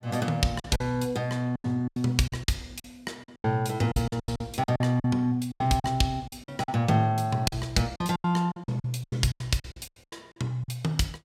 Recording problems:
packet loss; 15% of the sound replaced, filled with silence

